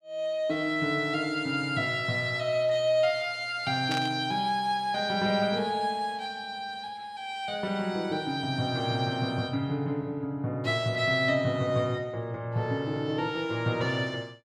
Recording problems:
static burst; at 4 s; peak -3 dB vs average level

